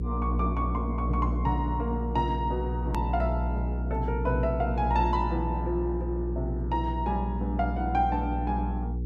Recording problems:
hum; 60 Hz, harmonics up to 480 Hz, SNR 1 dB
hard cut with a click; at 3 s

